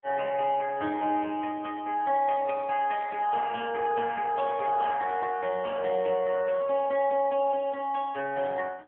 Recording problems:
telephone audio; 240 Hz to 3.3 kHz, AMR-NB

